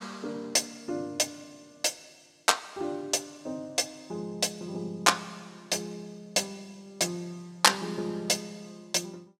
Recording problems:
none

